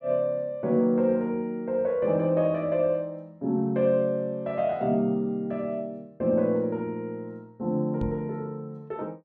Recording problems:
microphone bump; at 8 s; peak -2 dB vs average level

